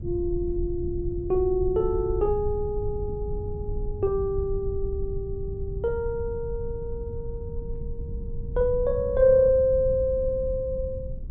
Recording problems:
low-frequency rumble; below 90 Hz, SNR 8 dB

